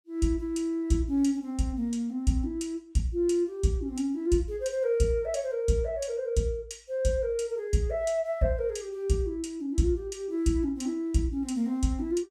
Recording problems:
none

